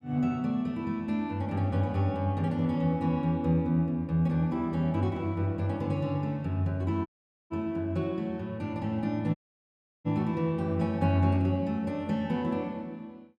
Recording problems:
audio cutting out; at 7 s and at 9.5 s for 0.5 s

